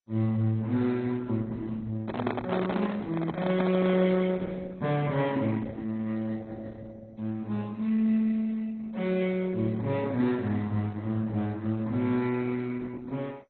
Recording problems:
lossy codec; Opus, then MP2, log-spectral distance 3 dB
handling noise; from 2 to 4 s; peak +3 dB vs average level

